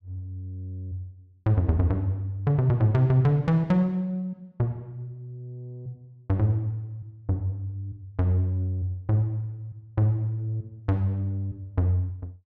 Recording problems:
none

